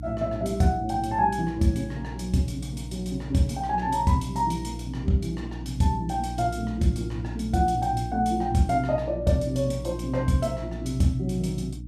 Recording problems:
hum; 60 Hz, harmonics up to 300 Hz, SNR 10 dB

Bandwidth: 14 kHz